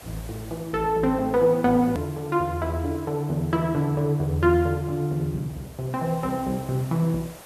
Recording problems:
background hiss; SNR 21 dB
edit click; at 2 s

